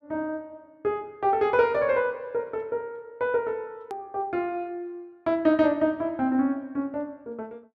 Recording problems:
click at an edit; at 4 s

